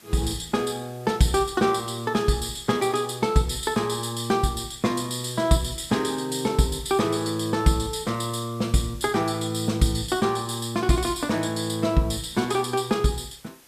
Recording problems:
background hiss; slope -1 dB per octave, SNR 26 dB

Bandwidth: 14.5 kHz